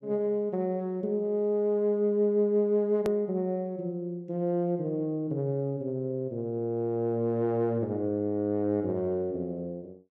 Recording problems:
click at an edit; at 3 s

